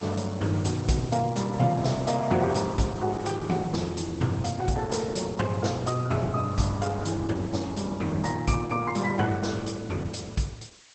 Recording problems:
codec artefacts; Opus, log-spectral distance 7 dB, nothing above 8 kHz
hiss; slope +3 dB per octave, SNR 22 dB

